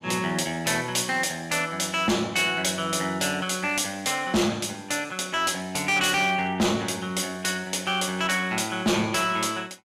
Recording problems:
distortion; hard clipping, uneven, signal-to-distortion ratio 8 dB

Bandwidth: 14.5 kHz